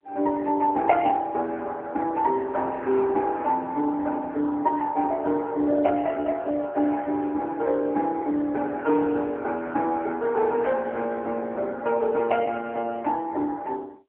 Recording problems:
phone line; 260 Hz to 2.8 kHz, AMR-NB

